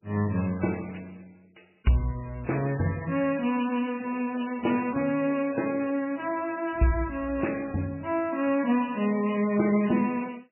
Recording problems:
lossy codec; MP3, log-spectral distance 7 dB, nothing above 2.7 kHz

